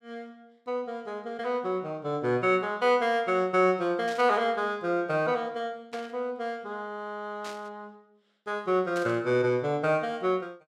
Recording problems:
static burst; 4 times, first at 4 s; peak -10 dB vs average level

